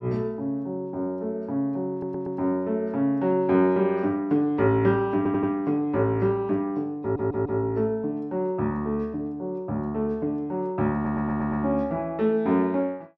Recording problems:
audio stuttering; 4 times, first at 2 s

